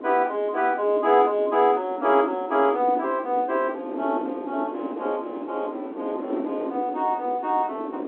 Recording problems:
telephone audio; 260 Hz to 3.6 kHz, G.711
wind noise; below 470 Hz, SNR 9 dB

